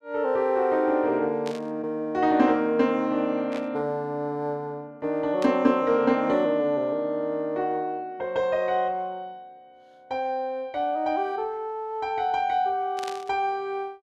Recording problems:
static burst; 4 times, first at 1.5 s; peak -8 dB vs average level

